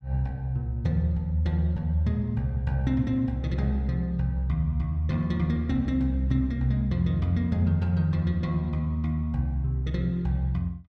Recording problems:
none

